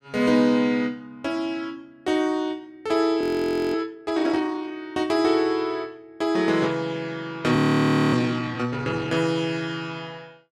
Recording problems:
audio freezing; at 3 s for 0.5 s and at 7.5 s for 0.5 s

